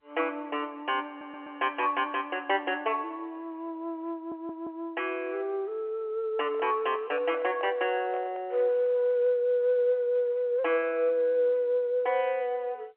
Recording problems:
phone line; 340 Hz to 3.2 kHz, G.711
stutter; at 1 s and at 4 s
handling noise; from 6.5 to 8.5 s; peak -10 dB vs average level

